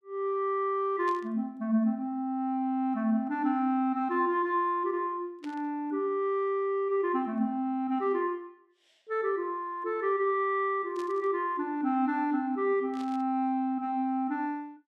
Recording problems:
static burst; 4 times, first at 1 s; peak -14 dB vs average level

